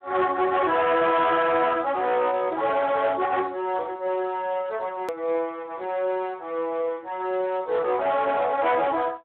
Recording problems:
telephone audio; 280 Hz to 3.6 kHz, Speex
distortion; hard clipping, uneven, signal-to-distortion ratio 10 dB
hard cut with a click; at 5 s

